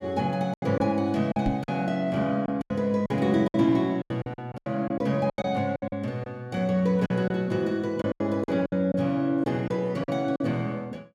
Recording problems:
lost packets; 12% of the sound replaced, filled with silence
microphone thump; at 1.5 s; peak +2 dB vs average level

